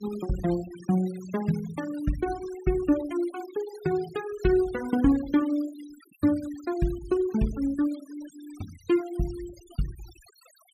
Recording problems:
noise reduction artefacts; signal-to-artefact ratio 20 dB

